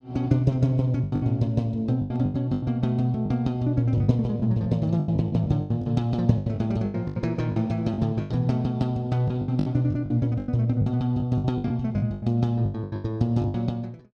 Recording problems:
lost packets; 15% of the sound replaced, filled with the last packet

